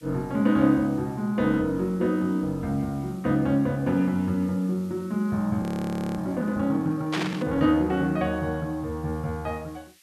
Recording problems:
background hiss; SNR 29 dB
frozen audio; at 5.5 s for 0.5 s
static burst; at 7 s; peak 0 dB vs average level

